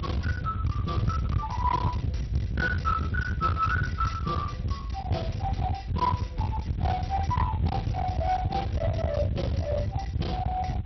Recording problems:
lossy codec; Speex, then MP2, log-spectral distance 2 dB, nothing above 5.8 kHz
distortion; hard clipping, signal-to-distortion ratio 10 dB
rumble; below 190 Hz, SNR 0 dB

